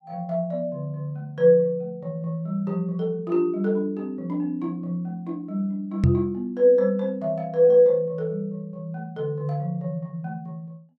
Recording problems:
microphone bump; at 6 s; peak +8 dB vs average level

